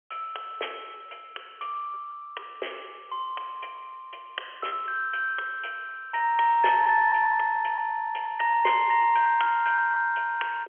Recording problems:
telephone audio; 320 Hz to 3.3 kHz, G.711
lost packets; 5% of the sound replaced, filled with repeated pitch periods

